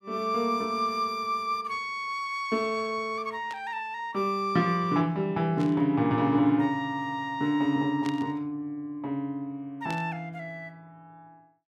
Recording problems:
static burst; 4 times, first at 3.5 s; peak -9 dB vs average level

